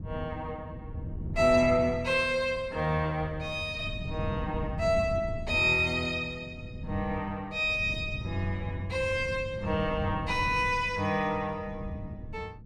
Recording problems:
wind noise; below 160 Hz, SNR 11 dB

